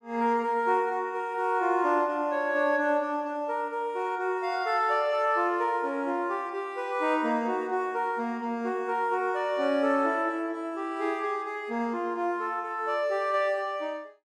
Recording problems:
none

